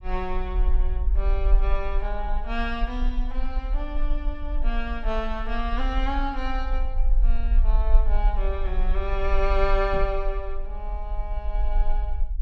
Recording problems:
low-frequency rumble; below 42 Hz, strongest tone 22 Hz, SNR -3 dB
microphone bump; at 10 s; peak -2 dB vs average level

